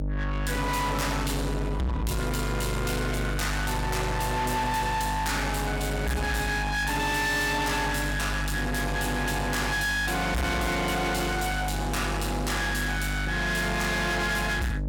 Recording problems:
distorted audio; soft clipping, signal-to-distortion ratio 6 dB
electrical hum; 50 Hz, harmonics up to 700 Hz, SNR 3 dB

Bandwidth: 17.5 kHz